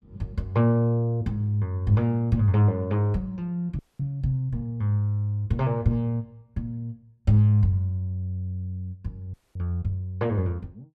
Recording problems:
frozen audio; at 4 s and at 9.5 s

